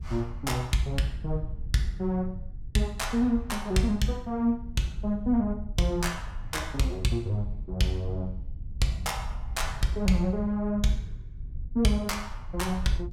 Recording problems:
wind noise; below 70 Hz, SNR 10 dB

